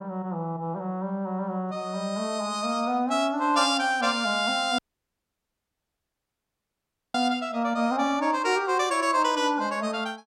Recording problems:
audio cutting out; at 5 s for 2.5 s

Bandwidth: 16 kHz